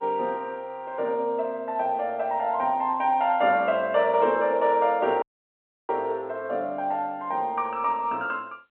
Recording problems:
telephone audio; 280 Hz to 3.6 kHz, G.711
dropout; at 5 s for 0.5 s

